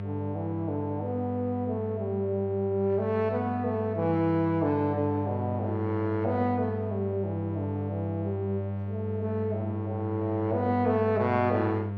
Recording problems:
electrical hum; 50 Hz, harmonics up to 900 Hz, SNR 5 dB

